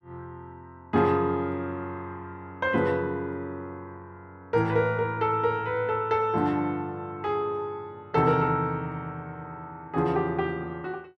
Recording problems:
none

